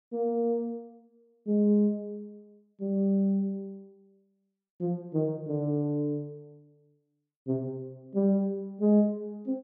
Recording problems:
none

